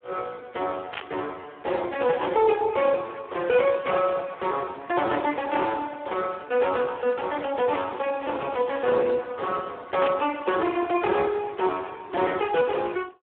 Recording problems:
telephone audio; 300 Hz to 3.4 kHz, Speex
static burst; at 1 s and at 10 s; peak -3 dB vs average level

